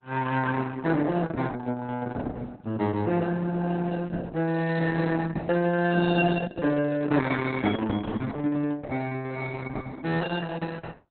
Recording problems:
lossy codec; Opus, log-spectral distance 4 dB, nothing above 4 kHz

